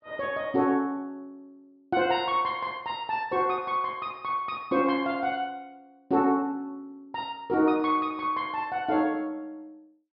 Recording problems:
treble cut off; nothing above 5.2 kHz

